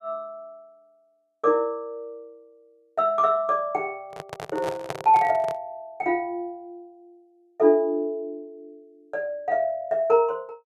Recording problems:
handling noise; from 4 to 5.5 s; peak -2 dB vs average level

